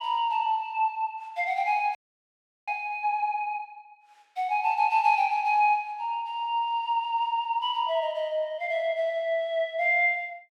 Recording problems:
frozen audio; at 2 s for 0.5 s

